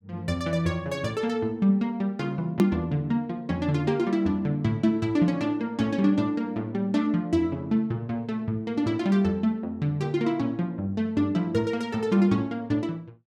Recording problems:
hard cut with a click; at 2.5 s

